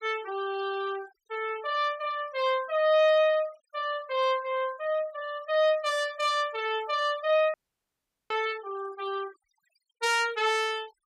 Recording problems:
denoising artefacts; signal-to-artefact ratio 21 dB
audio cutting out; at 7.5 s for 1 s

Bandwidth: 15.5 kHz